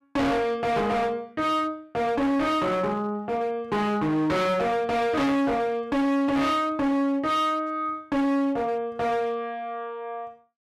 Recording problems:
distortion; hard clipping, signal-to-distortion ratio 6 dB

